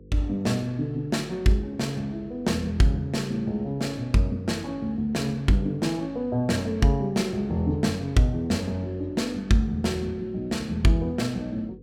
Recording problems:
hum; 50 Hz, harmonics up to 500 Hz, SNR 22 dB

